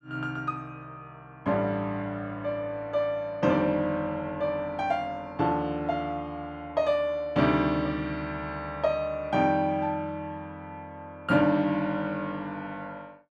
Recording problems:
none

